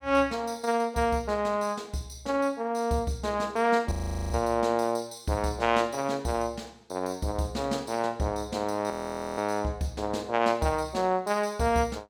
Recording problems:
frozen audio; at 4 s and at 9 s

